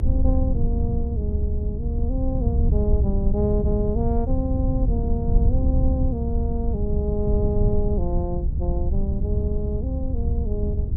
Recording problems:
low-frequency rumble; below 90 Hz, SNR -4 dB

